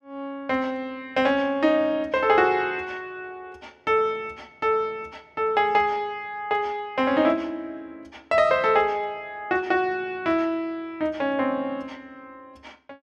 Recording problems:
none

